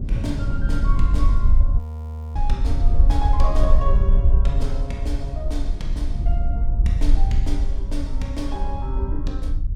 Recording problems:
rumble; below 54 Hz, strongest tone 20 Hz, SNR -8 dB
wind on the microphone; below 160 Hz, SNR 4 dB
audio freezing; at 2 s for 0.5 s

